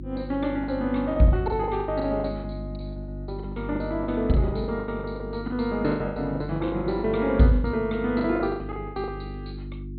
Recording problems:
treble cut off; nothing above 4.3 kHz
hum; 50 Hz, harmonics up to 350 Hz, SNR 11 dB
lost packets; 19% of the sound replaced, filled with the last packet

